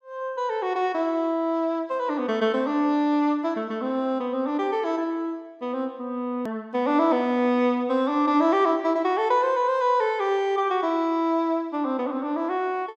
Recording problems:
click at an edit; at 6.5 s

